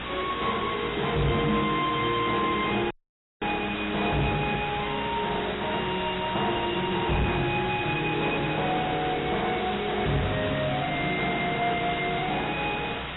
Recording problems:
lossy compression; AAC, log-spectral distance 17 dB, nothing above 3.9 kHz
distorted audio; soft clipping, signal-to-distortion ratio 4 dB
hum; 60 Hz, harmonics up to 660 Hz, SNR 16 dB
hiss; SNR 2 dB
audio cutting out; at 3 s for 0.5 s

